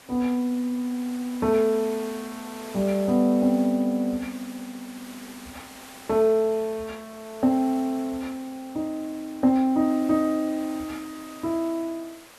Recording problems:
background hiss; slope -2 dB per octave, SNR 19 dB

